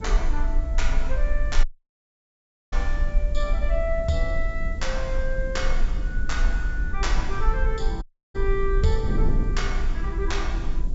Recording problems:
treble cut off; nothing above 8 kHz
hiss; SNR 30 dB
rumble; below 42 Hz, strongest tone 22 Hz, SNR -2 dB
wind noise; below 230 Hz, SNR 6 dB
dropout; at 1.5 s for 1 s and at 8 s

